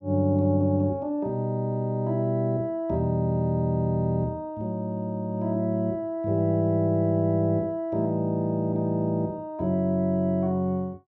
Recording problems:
none

